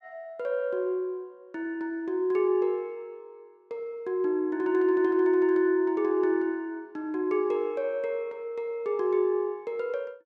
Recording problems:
none

